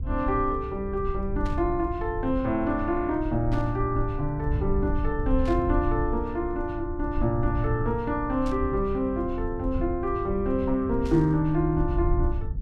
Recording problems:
low-frequency rumble; below 78 Hz, SNR 6 dB
burst of static; 5 times, first at 1.5 s; peak -13 dB vs average level

